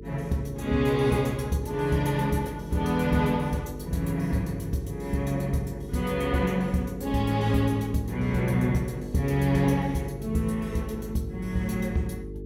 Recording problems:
hum; 50 Hz, harmonics up to 450 Hz, SNR 13 dB

